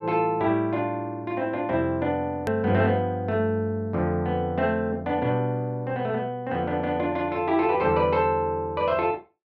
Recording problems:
click at an edit; at 2.5 s

